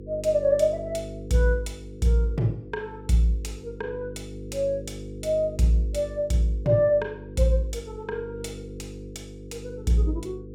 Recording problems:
hum; 50 Hz, harmonics up to 500 Hz, SNR 14 dB

